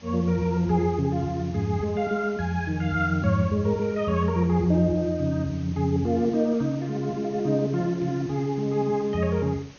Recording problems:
treble cut off; nothing above 6.6 kHz
hiss; slope -2 dB per octave, SNR 23 dB

